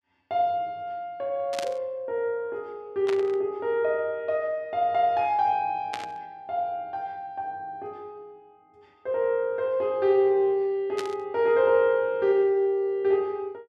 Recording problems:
burst of static; 4 times, first at 1.5 s; peak -4 dB vs average level

